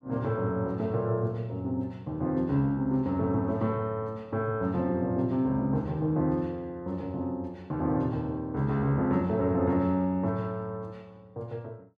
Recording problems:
none

